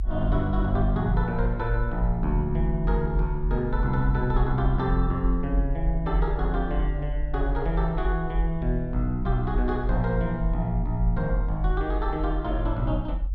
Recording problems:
rumble; below 48 Hz, strongest tone 42 Hz, SNR 2 dB

